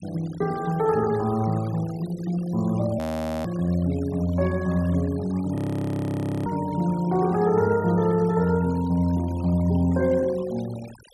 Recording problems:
noise reduction artefacts; signal-to-artefact ratio 21 dB
audio freezing; at 3 s and at 5.5 s for 1 s

